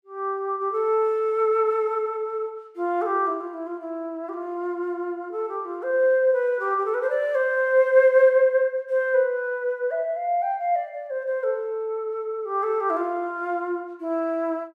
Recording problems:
none

